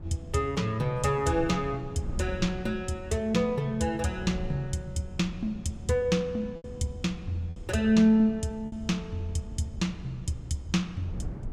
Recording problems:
wind noise; below 150 Hz, SNR 14 dB
lost packets; 1.8% of the sound replaced, filled with repeated pitch periods

